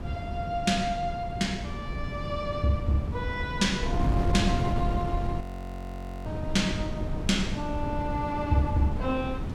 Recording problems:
wind on the microphone; below 210 Hz, SNR 3 dB
audio freezing; at 5.5 s for 1 s

